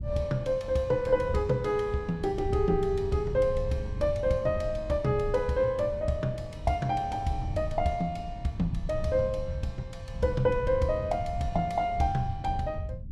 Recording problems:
rumble; below 110 Hz, SNR 9 dB

